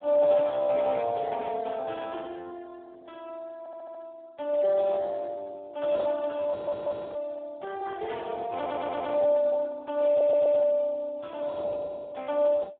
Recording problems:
phone line; 280 Hz to 2.3 kHz, Speex
stutter; 4 times, first at 3.5 s

